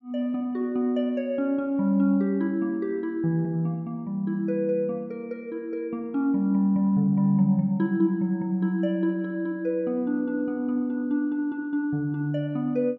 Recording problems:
none

